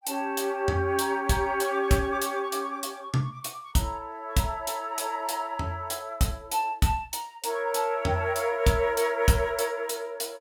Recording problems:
none

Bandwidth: 17.5 kHz